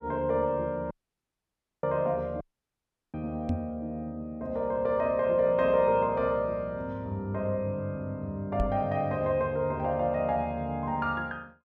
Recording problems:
audio cutting out; at 1 s for 1 s and at 2.5 s for 0.5 s
knock on the microphone; at 3.5 s and at 8.5 s; peak +2 dB vs average level

